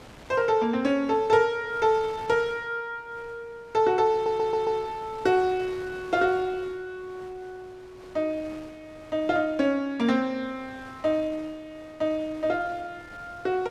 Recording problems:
wind noise; below 1.9 kHz, SNR 22 dB
audio stuttering; at 4 s

